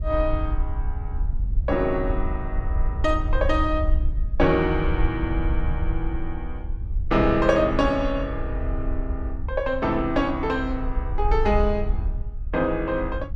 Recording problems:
wind on the microphone; below 64 Hz, SNR 4 dB

